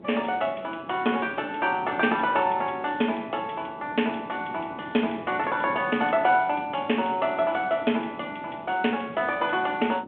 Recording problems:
phone line; 240 Hz to 3.4 kHz, G.726
wind on the microphone; below 420 Hz, SNR 17 dB

